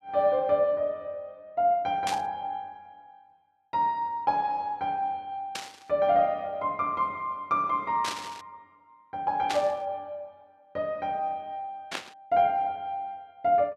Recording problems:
burst of static; 5 times, first at 2 s; peak 0 dB vs average level

